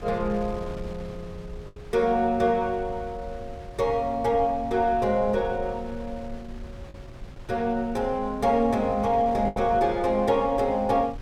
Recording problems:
wind on the microphone; below 120 Hz, SNR 17 dB
lost packets; 1.5% of the sound replaced, filled with the last packet

